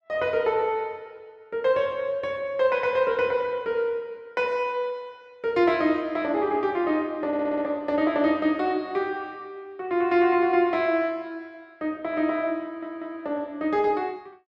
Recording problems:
audio stuttering; at 7.5 s and at 13 s

